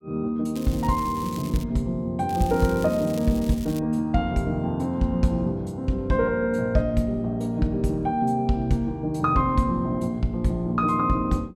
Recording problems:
crackle; from 0.5 to 1.5 s and from 2.5 to 4 s; loose cable, SNR 19 dB

